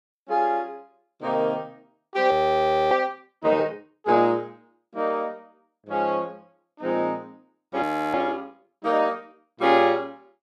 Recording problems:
frozen audio; at 2.5 s for 0.5 s and at 8 s

